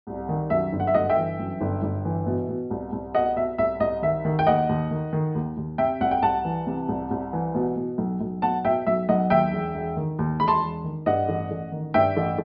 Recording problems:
treble missing; nothing above 5.5 kHz

